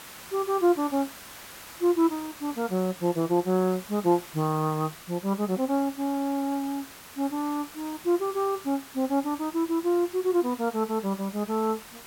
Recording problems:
background hiss; slope -1 dB per octave, SNR 16 dB

